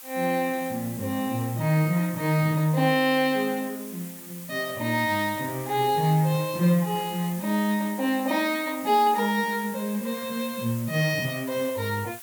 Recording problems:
hiss; slope +1 dB per octave, SNR 14 dB

